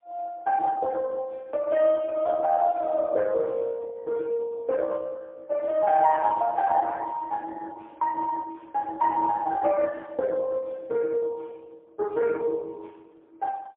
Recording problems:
telephone audio; 170 Hz to 3.1 kHz, AMR-NB, then MP3

